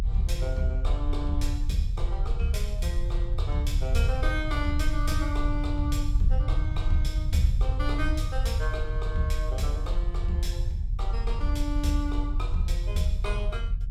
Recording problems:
rumble; below 66 Hz, strongest tone 40 Hz, SNR -2 dB

